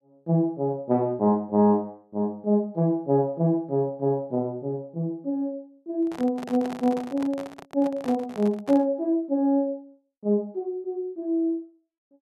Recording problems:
handling noise; from 6 to 9 s; peak -7 dB vs average level

